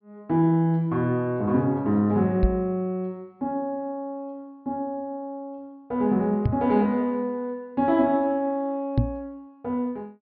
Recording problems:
treble cut off; nothing above 5.5 kHz
microphone thump; at 2.5 s, at 6.5 s and at 9 s; peak +7 dB vs average level

